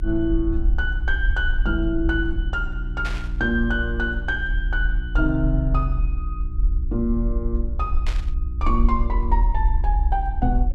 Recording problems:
hum; 60 Hz, harmonics up to 360 Hz, SNR 10 dB
rumble; below 58 Hz, strongest tone 38 Hz, SNR 0 dB
static burst; at 3 s and at 8 s; peak -3 dB vs average level

